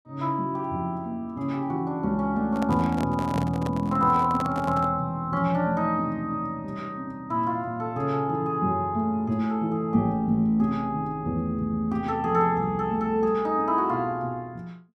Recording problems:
microphone handling noise; from 2.5 to 5 s; peak -3 dB vs average level

